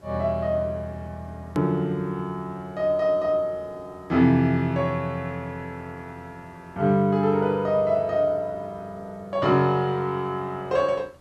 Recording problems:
background hiss; SNR 30 dB
click at an edit; at 1.5 s

